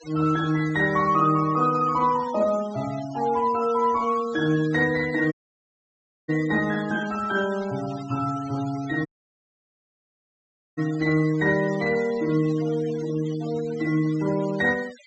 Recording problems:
treble missing; nothing above 8 kHz
denoising artefacts; signal-to-artefact ratio 18 dB
dropout; at 5.5 s for 1 s and at 9 s for 1.5 s

